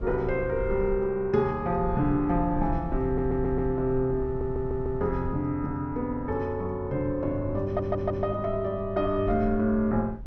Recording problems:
low-frequency rumble; below 80 Hz, SNR 12 dB
audio stuttering; at 3 s, at 4.5 s and at 7.5 s

